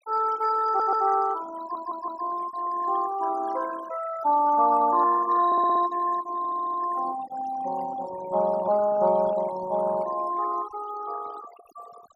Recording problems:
noise reduction artefacts; signal-to-artefact ratio 15 dB
audio stuttering; 4 times, first at 0.5 s

